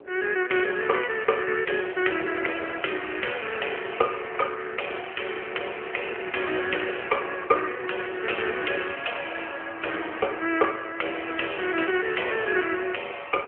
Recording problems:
telephone audio; 300 Hz to 3.2 kHz, AMR-NB
wind noise; below 570 Hz, SNR 23 dB

